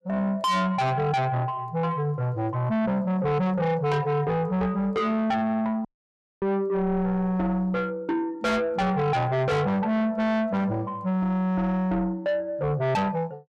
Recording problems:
distorted audio; soft clipping, signal-to-distortion ratio 6 dB
dropout; at 6 s for 0.5 s

